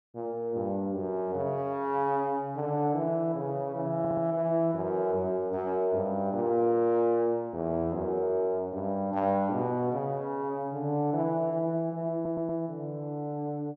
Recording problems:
audio stuttering; at 4 s and at 12 s

